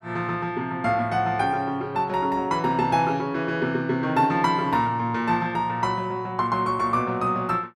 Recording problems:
none

